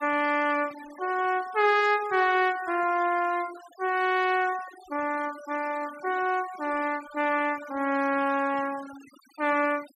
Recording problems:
denoising artefacts; signal-to-artefact ratio 19 dB

